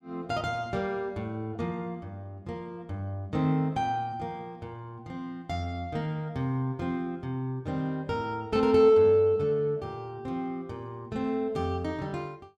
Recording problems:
none

